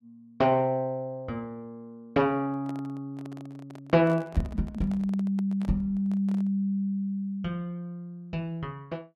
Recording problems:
microphone handling noise; from 2.5 to 6.5 s; peak -10 dB vs average level

